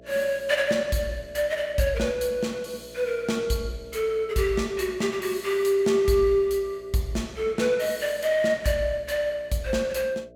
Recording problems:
hum; 60 Hz, harmonics up to 660 Hz, SNR 24 dB

